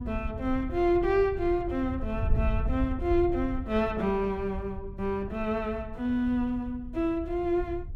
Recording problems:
wind noise; below 84 Hz, SNR 8 dB

